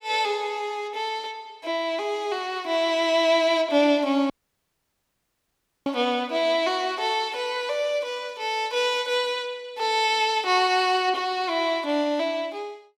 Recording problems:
audio cutting out; at 4.5 s for 1.5 s

